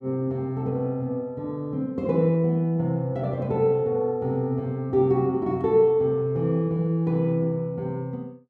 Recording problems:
none

